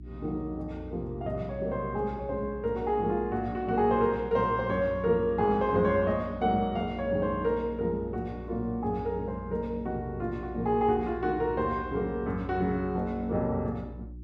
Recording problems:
hum; 60 Hz, harmonics up to 360 Hz, SNR 14 dB

